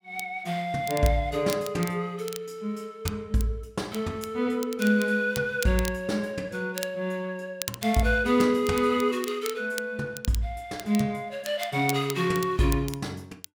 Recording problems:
crackle; vinyl, SNR 13 dB

